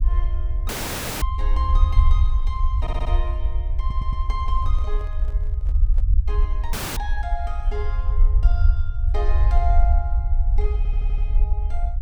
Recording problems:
low-frequency rumble; below 58 Hz, SNR -11 dB
dropout; at 0.5 s for 0.5 s and at 6.5 s
stutter; at 3 s, at 4 s and at 11 s
microphone handling noise; from 4.5 to 6 s; peak -9 dB vs average level

